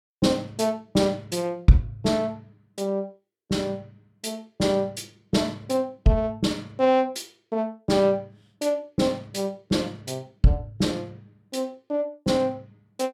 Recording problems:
none

